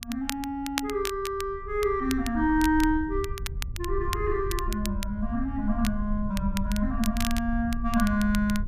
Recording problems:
wind noise; below 70 Hz, SNR 7 dB
crackle; vinyl, SNR 11 dB

